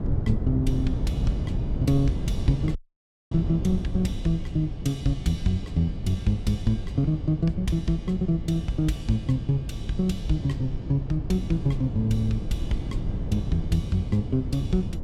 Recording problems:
wind on the microphone; below 150 Hz, SNR 5 dB
audio cutting out; at 3 s for 0.5 s

